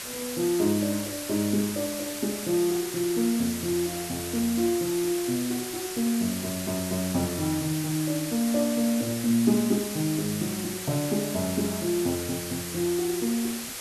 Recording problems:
background hiss; slope 0 dB per octave, SNR 6 dB

